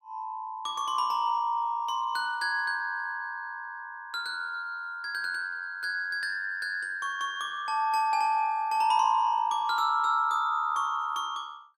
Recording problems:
none

